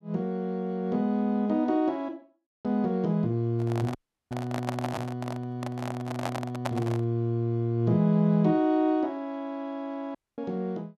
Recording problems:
handling noise; from 3.5 to 7 s; peak +1 dB vs average level
audio cutting out; at 4 s and at 10 s

